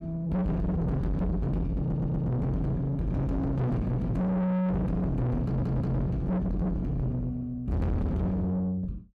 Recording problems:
distortion; soft clipping, signal-to-distortion ratio 6 dB
audio stuttering; at 2 s and at 5.5 s

